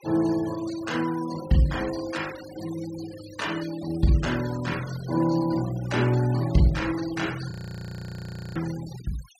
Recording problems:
noise reduction artefacts; signal-to-artefact ratio 15 dB
audio freezing; at 7.5 s for 1 s

